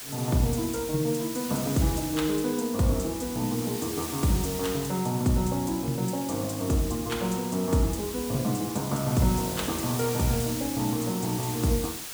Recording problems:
background hiss; slope +1 dB per octave, SNR 8 dB

